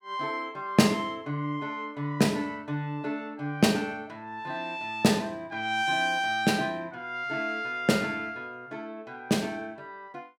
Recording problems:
none

